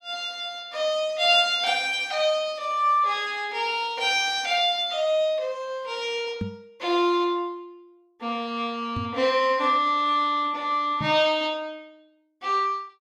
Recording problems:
knock on the microphone; at 6.5 s, at 9 s and at 11 s; peak -2 dB vs average level

